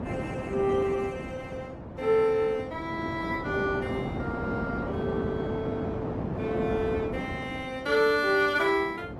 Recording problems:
codec artefacts; Opus, log-spectral distance 2 dB, nothing above 18.3 kHz
wind noise; below 510 Hz, SNR 7 dB

